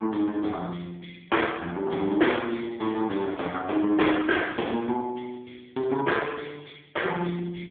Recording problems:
phone line; 260 Hz to 3.5 kHz, AMR-NB

